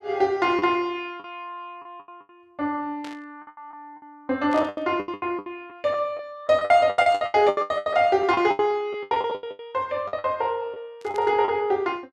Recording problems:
packet loss; 17% of the sound replaced, filled with the last packet
burst of static; 4 times, first at 3 s; peak -12 dB vs average level

